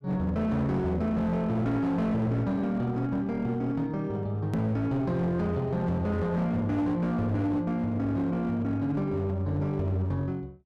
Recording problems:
distorted audio; hard clipping, uneven, signal-to-distortion ratio 10 dB
edit click; at 4.5 s

